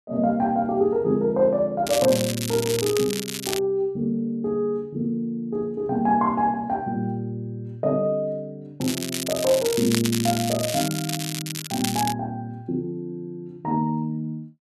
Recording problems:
crackle; from 2 to 3.5 s, from 9 to 12 s and at 12 s; loose cable, SNR 5 dB

